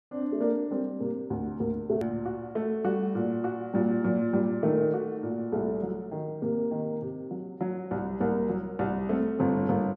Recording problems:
click at an edit; at 2 s

